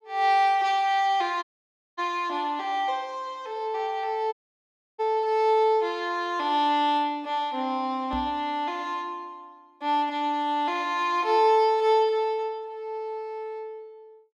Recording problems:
dropout; at 1.5 s for 0.5 s and at 4.5 s for 0.5 s
microphone thump; at 8 s; peak -3 dB vs average level

